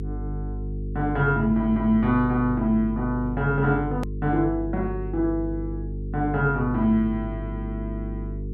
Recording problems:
electrical hum; 50 Hz, harmonics up to 450 Hz, SNR 8 dB
edit click; at 4 s

